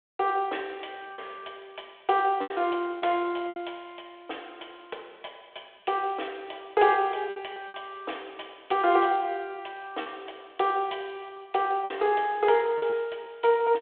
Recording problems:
telephone audio; 320 Hz to 3.5 kHz, G.726
packet loss; 5% of the sound replaced, filled with repeated pitch periods

